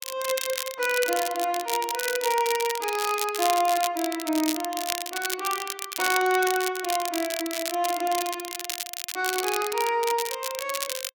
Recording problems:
crackle; vinyl, SNR 5 dB

